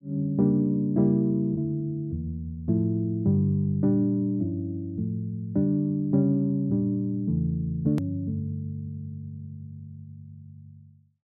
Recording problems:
edit click; at 8 s

